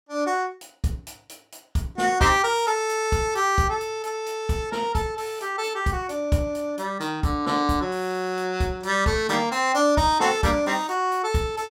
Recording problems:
none

